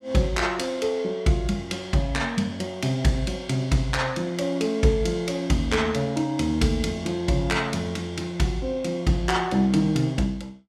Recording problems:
none

